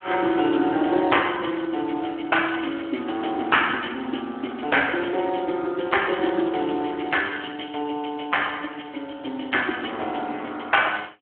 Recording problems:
phone line; 240 Hz to 3.3 kHz, Speex

